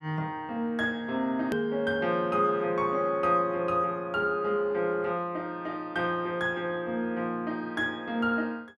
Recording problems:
hard cut with a click; at 1.5 s

